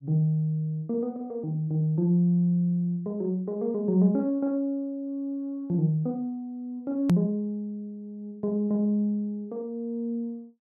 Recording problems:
hard cut with a click; at 7 s

